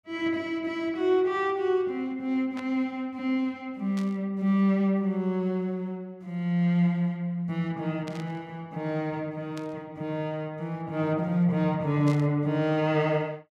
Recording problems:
static burst; 5 times, first at 2.5 s; peak -10 dB vs average level

